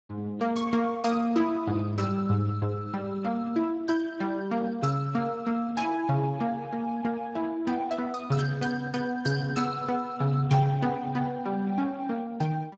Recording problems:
codec artefacts; Speex, log-spectral distance 3 dB, nothing above 7.3 kHz

